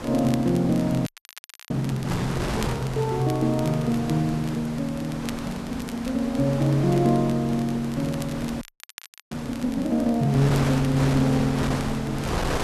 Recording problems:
background hiss; slope -3 dB per octave, SNR 28 dB
wind on the microphone; below 1.4 kHz, SNR 8 dB
crackling; vinyl, SNR 20 dB
frozen audio; at 1 s for 0.5 s and at 8.5 s for 0.5 s

